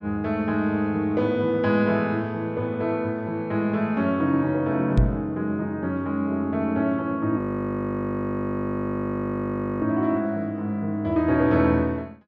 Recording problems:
knock on the microphone; at 5 s; peak +8 dB vs average level
audio freezing; at 7.5 s for 2.5 s

